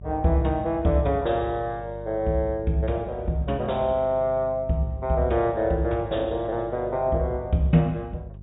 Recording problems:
treble missing; nothing above 4 kHz
hum; 50 Hz, harmonics up to 400 Hz, SNR 17 dB

